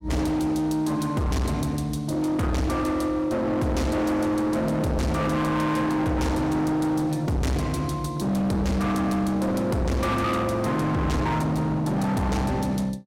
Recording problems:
distortion; hard clipping, signal-to-distortion ratio 6 dB

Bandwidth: 16.5 kHz